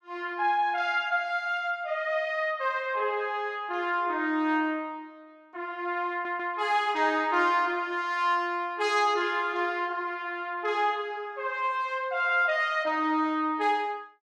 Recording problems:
audio stuttering; at 6 s

